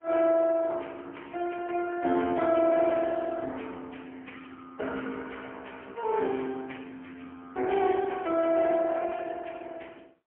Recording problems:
phone line; 220 Hz to 3.3 kHz, AMR-NB, then MP3

